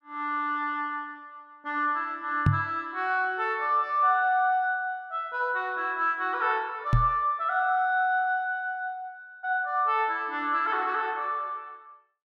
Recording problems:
knock on the microphone; at 2.5 s and at 7 s; peak +7 dB vs average level

